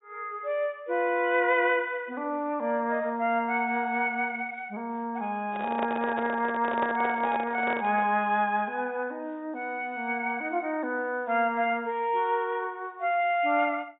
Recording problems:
treble missing; nothing above 4 kHz
microphone handling noise; from 5.5 to 8 s; peak 0 dB vs average level

